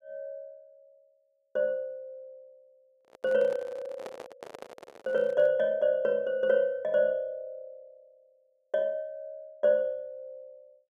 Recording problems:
handling noise; from 3 to 5.5 s; peak -8 dB vs average level

